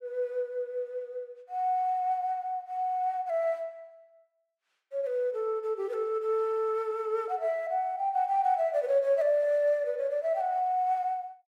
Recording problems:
none

